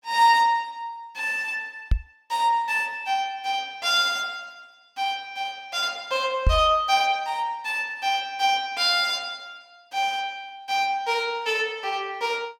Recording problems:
microphone bump; at 2 s and at 6.5 s; peak +7 dB vs average level

